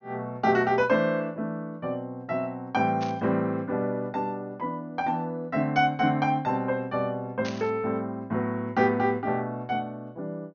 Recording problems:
treble missing; nothing above 6.5 kHz
static burst; at 3 s and at 7.5 s; peak -6 dB vs average level

